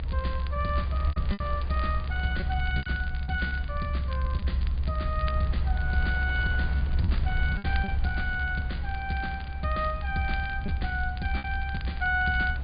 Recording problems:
treble missing; nothing above 4.8 kHz
low-frequency rumble; below 72 Hz, strongest tone 66 Hz, SNR -1 dB
wind on the microphone; below 1.5 kHz, SNR 17 dB
crackling; vinyl, SNR 18 dB
lost packets; 5% of the sound replaced, filled with repeated pitch periods

